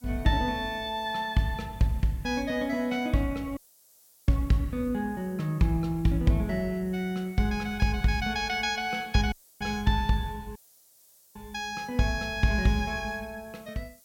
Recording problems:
hiss; SNR 27 dB
dropout; at 3.5 s for 0.5 s, at 9.5 s and at 11 s for 1 s

